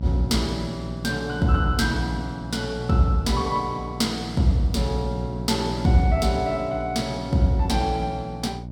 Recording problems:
hum; 60 Hz, harmonics up to 660 Hz, SNR 10 dB

